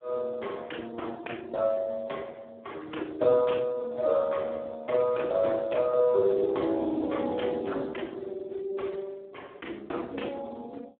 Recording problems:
telephone audio; 260 Hz to 3.4 kHz, Speex

